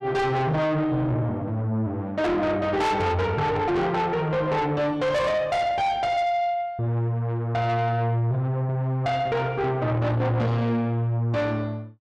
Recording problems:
distortion; soft clipping, signal-to-distortion ratio 7 dB

